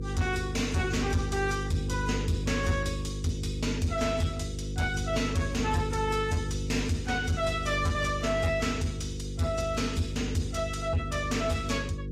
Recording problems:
lossy compression; AAC, log-spectral distance 3 dB
distorted audio; soft clipping, signal-to-distortion ratio 11 dB
hum; 50 Hz, harmonics up to 500 Hz, SNR 5 dB

